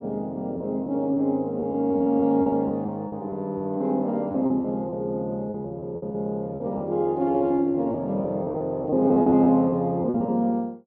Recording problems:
lost packets; 11% of the sound replaced, filled with repeated pitch periods

